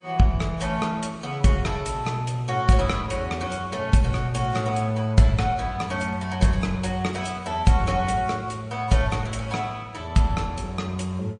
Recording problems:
codec artefacts; MP3, log-spectral distance 2 dB, nothing above 9.2 kHz

